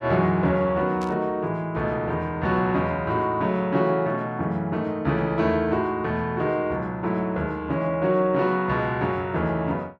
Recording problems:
burst of static; at 1 s; peak -14 dB vs average level

